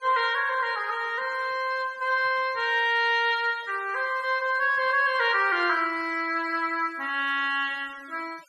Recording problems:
noise reduction artefacts; signal-to-artefact ratio 24 dB

